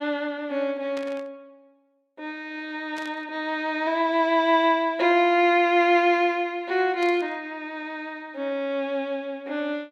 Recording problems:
burst of static; at 1 s, at 3 s and at 7 s; peak -12 dB vs average level

